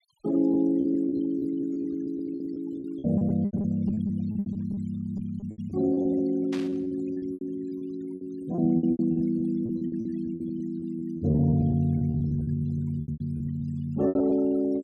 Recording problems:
denoising artefacts; signal-to-artefact ratio 25 dB
lost packets; 18% of the sound replaced, filled with repeated pitch periods
static burst; at 6.5 s; peak -8 dB vs average level

